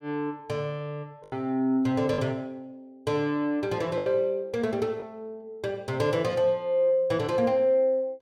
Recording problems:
lost packets; 3% of the sound replaced, filled with the last packet

